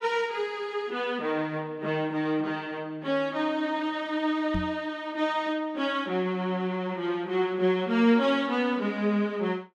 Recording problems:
microphone thump; at 4.5 s; peak 0 dB vs average level

